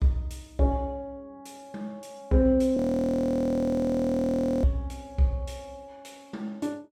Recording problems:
frozen audio; at 3 s for 2 s

